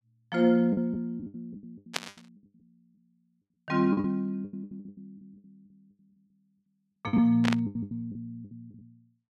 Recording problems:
packet loss; 20% of the sound replaced, filled with the last packet
burst of static; at 2 s and at 7.5 s; peak +2 dB vs average level

